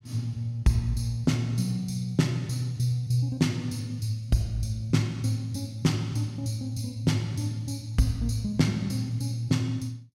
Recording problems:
none

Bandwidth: 16.5 kHz